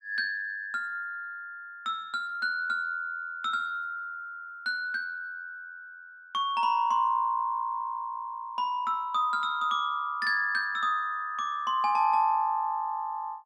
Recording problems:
none

